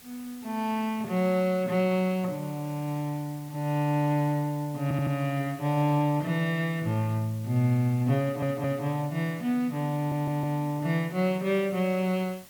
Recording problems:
hiss; slope 0 dB per octave, SNR 22 dB
audio stuttering; at 5 s, at 8 s and at 10 s

